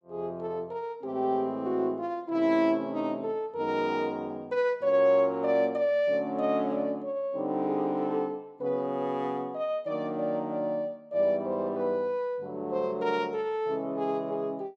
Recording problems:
none

